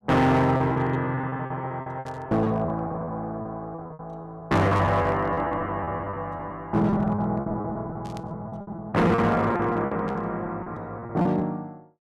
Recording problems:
distortion; hard clipping, uneven, signal-to-distortion ratio 10 dB
packet loss; 16% of the sound replaced, filled with repeated pitch periods
static burst; 4 times, first at 2 s; peak -13 dB vs average level

